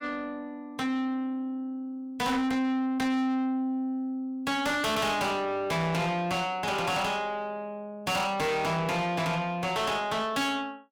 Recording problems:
distortion; soft clipping, signal-to-distortion ratio 6 dB

